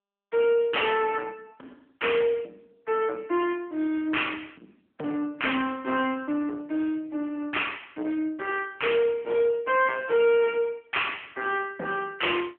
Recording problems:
telephone audio; 220 Hz to 3.3 kHz, AMR-NB
distorted audio; soft clipping, signal-to-distortion ratio 11 dB

